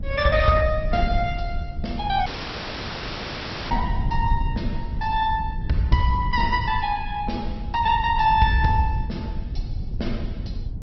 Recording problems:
treble missing; nothing above 5.3 kHz
codec artefacts; Opus, log-spectral distance 3 dB
rumble; below 88 Hz, SNR 7 dB
dropout; at 2.5 s for 1.5 s

